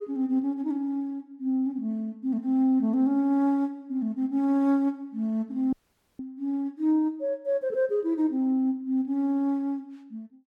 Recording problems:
dropout; at 5.5 s

